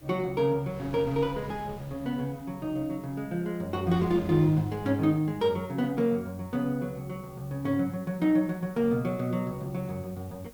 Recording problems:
hiss; slope +5 dB per octave, SNR 27 dB
wind noise; below 480 Hz, SNR 22 dB

